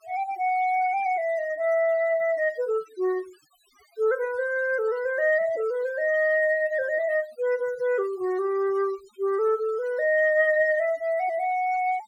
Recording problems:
noise reduction artefacts; signal-to-artefact ratio 24 dB

